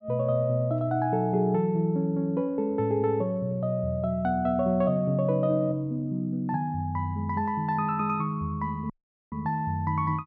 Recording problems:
audio cutting out; at 9 s

